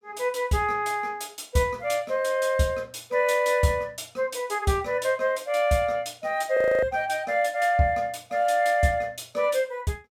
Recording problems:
audio freezing; at 6.5 s

